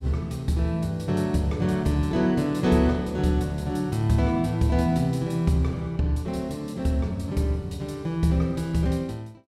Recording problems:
none

